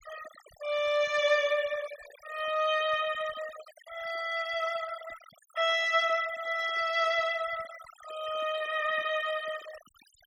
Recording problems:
noise reduction artefacts; signal-to-artefact ratio 17 dB

